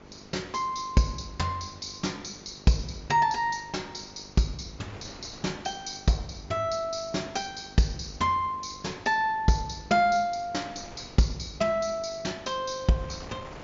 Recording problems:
low-pass filter; nothing above 7.3 kHz
electrical hum; 50 Hz, harmonics up to 1.2 kHz, SNR 24 dB
wind on the microphone; below 1.4 kHz, SNR 21 dB

